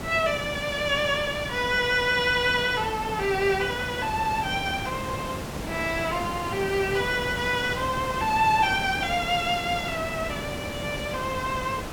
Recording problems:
hiss; slope -5 dB per octave, SNR 8 dB

